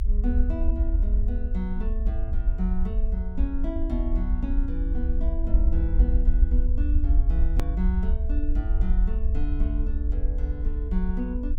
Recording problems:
low-frequency rumble; below 58 Hz, SNR -8 dB
hard cut with a click; at 7.5 s

